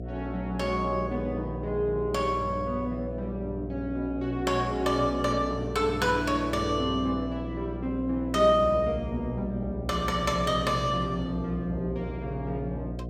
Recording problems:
hum; 60 Hz, harmonics up to 720 Hz, SNR 8 dB

